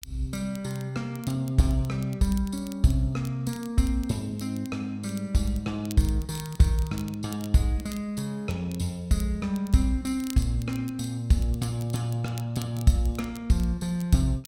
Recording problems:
crackling; vinyl, SNR 21 dB

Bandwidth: 16 kHz